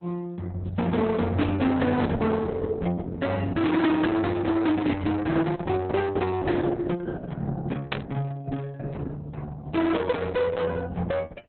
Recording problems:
lossy compression; Opus, log-spectral distance 3 dB, nothing above 4 kHz
distorted audio; hard clipping, signal-to-distortion ratio 8 dB
burst of static; at 8 s; peak +1 dB vs average level

